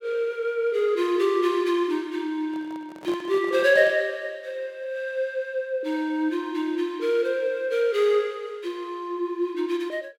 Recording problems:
microphone handling noise; from 2.5 to 4 s; peak -10 dB vs average level

